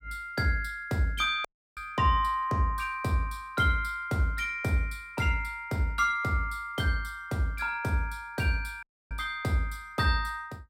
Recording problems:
audio cutting out; at 1.5 s and at 9 s

